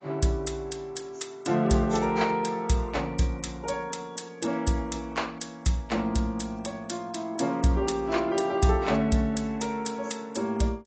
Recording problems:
codec artefacts; AAC, log-spectral distance 4 dB, nothing above 8.2 kHz

